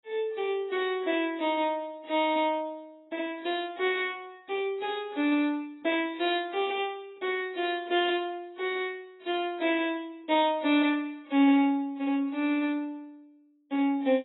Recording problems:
codec artefacts; AAC, log-spectral distance 2 dB, nothing above 3.9 kHz

